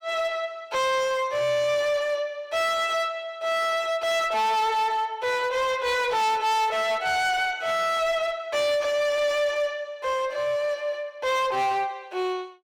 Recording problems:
distorted audio; hard clipping, signal-to-distortion ratio 7 dB

